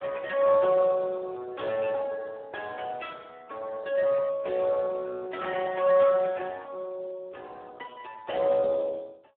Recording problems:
phone line; 320 Hz to 3.3 kHz, Speex

